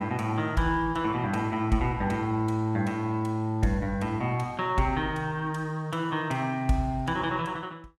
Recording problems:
none

